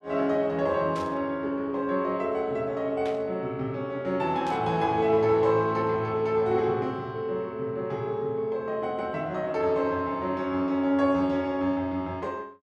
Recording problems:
burst of static; at 1 s, at 3 s and at 4.5 s; peak -11 dB vs average level

